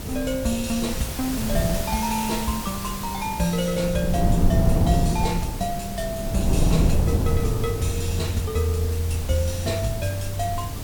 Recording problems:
background hiss; slope -1 dB per octave, SNR 9 dB
wind on the microphone; below 170 Hz, SNR 2 dB

